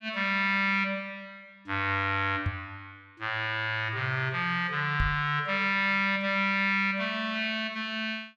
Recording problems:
microphone bump; at 2.5 s and at 5 s; peak 0 dB vs average level

